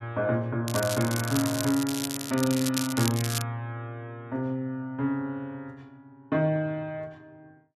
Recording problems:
crackling; from 0.5 to 3.5 s; loose cable, SNR 5 dB

